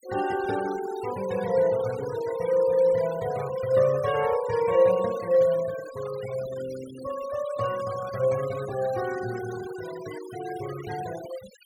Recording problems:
denoising artefacts; signal-to-artefact ratio 16 dB

